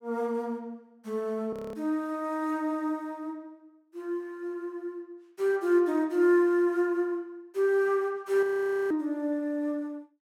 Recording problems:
frozen audio; at 1.5 s and at 8.5 s

